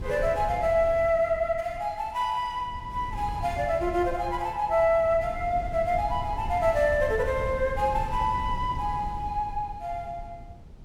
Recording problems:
wind on the microphone; below 120 Hz, SNR 12 dB

